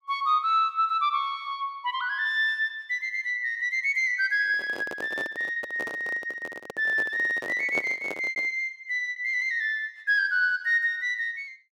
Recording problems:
lost packets; 2% of the sound replaced, filled with repeated pitch periods
microphone handling noise; from 4.5 to 8.5 s; peak -3 dB vs average level

